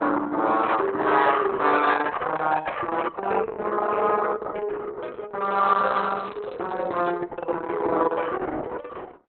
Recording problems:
lossy codec; Opus, log-spectral distance 4 dB, nothing above 4 kHz
crackle; from 5.5 to 7 s; loose cable, SNR 27 dB

